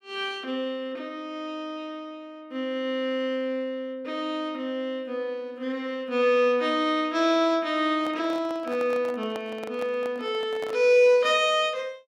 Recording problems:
handling noise; from 8 to 11 s; peak -8 dB vs average level

